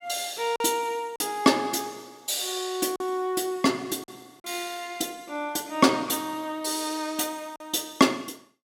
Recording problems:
packet loss; 2% of the sound replaced, filled with silence

